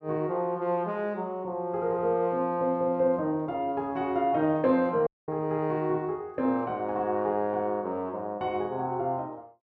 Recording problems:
dropout; at 5 s

